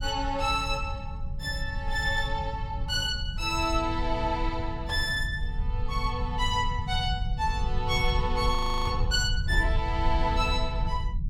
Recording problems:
low-frequency rumble; below 84 Hz, SNR 4 dB
audio freezing; at 8.5 s

